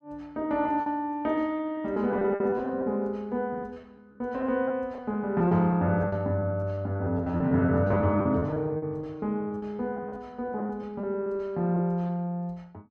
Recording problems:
packet loss; 13% of the sound replaced, filled with repeated pitch periods

